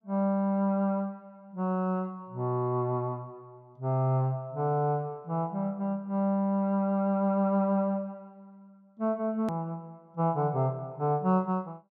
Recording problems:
edit click; at 9.5 s

